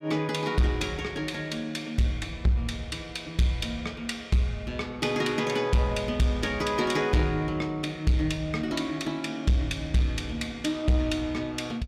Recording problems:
distortion; soft clipping, signal-to-distortion ratio 11 dB

